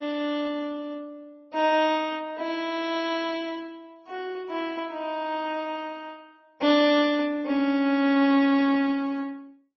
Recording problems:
codec artefacts; MP3, then Opus, log-spectral distance 2 dB, nothing above 4.8 kHz

